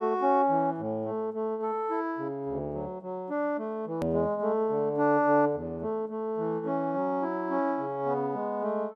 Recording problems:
hard cut with a click; at 4 s

